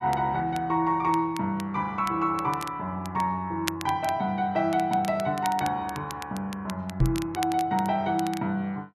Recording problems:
crackle; vinyl, SNR 15 dB
microphone bump; at 7 s; peak +7 dB vs average level

